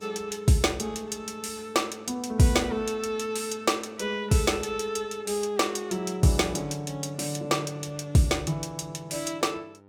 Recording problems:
electrical hum; 50 Hz, harmonics up to 1.9 kHz, SNR 29 dB

